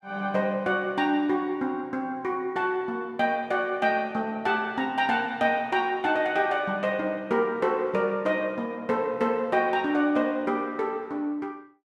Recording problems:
none

